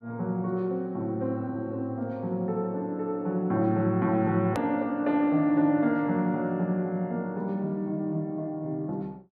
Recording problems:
low-pass filter; nothing above 8 kHz
edit click; at 4.5 s

